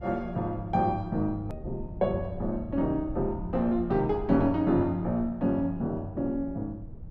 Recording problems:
rumble; below 100 Hz, SNR 14 dB
click at an edit; at 1.5 s

